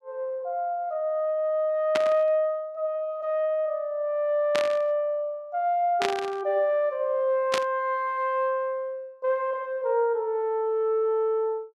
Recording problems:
burst of static; 4 times, first at 2 s; peak +3 dB vs average level

